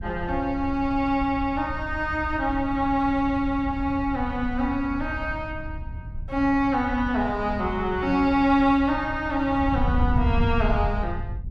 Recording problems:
wind noise; below 96 Hz, SNR 8 dB

